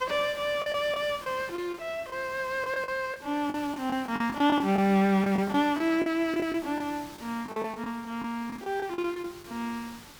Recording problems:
background hiss; slope -2 dB per octave, SNR 19 dB
lost packets; 11% of the sound replaced, filled with the last packet

